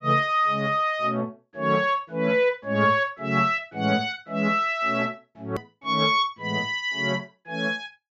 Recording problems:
treble missing; nothing above 8 kHz
hard cut with a click; at 5.5 s

